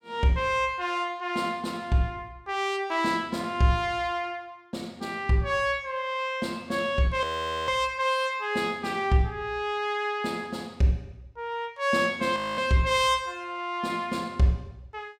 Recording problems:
frozen audio; at 7 s and at 12 s

